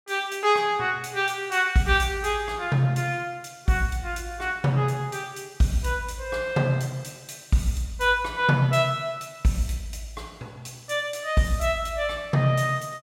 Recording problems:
none

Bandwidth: 16.5 kHz